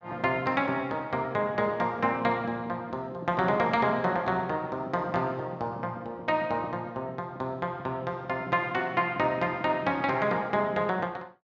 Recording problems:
none

